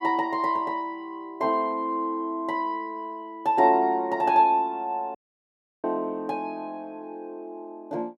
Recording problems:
dropout; at 5 s for 0.5 s

